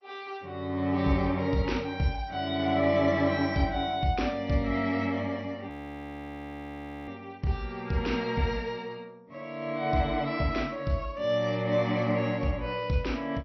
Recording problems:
lossy compression; MP2, then MP3, log-spectral distance 2 dB, nothing above 5.5 kHz
audio freezing; at 5.5 s for 1.5 s

